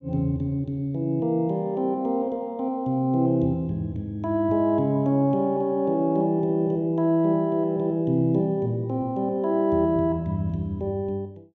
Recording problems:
none

